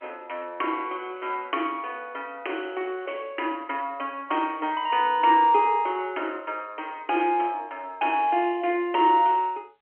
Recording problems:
phone line; 280 Hz to 3.3 kHz, G.711

